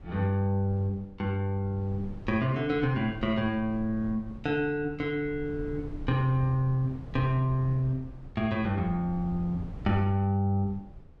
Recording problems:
low-frequency rumble; below 140 Hz, SNR 16 dB

